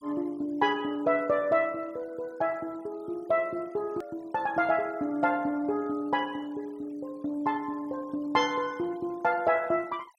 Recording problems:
denoising artefacts; signal-to-artefact ratio 27 dB
edit click; at 4 s

